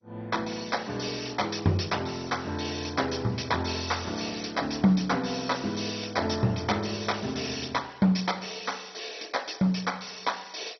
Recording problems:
lossy codec; MP2, then MP2, log-spectral distance 8 dB, nothing above 5.8 kHz

